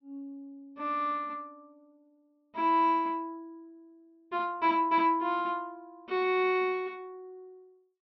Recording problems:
treble missing; nothing above 5.8 kHz

